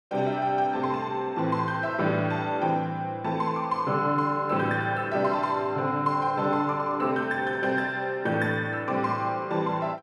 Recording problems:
none

